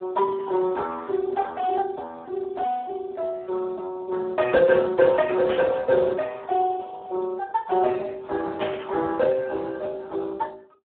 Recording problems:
phone line; 280 Hz to 2.1 kHz, Speex
burst of static; at 5.5 s and at 8.5 s; peak -5 dB vs average level

